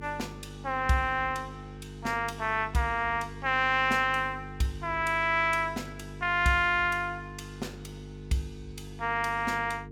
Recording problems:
electrical hum; 50 Hz, harmonics up to 450 Hz, SNR 15 dB

